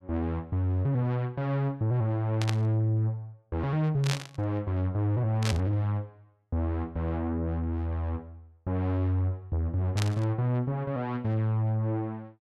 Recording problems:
distortion; soft clipping, signal-to-distortion ratio 10 dB
burst of static; 4 times, first at 2.5 s; peak +1 dB vs average level

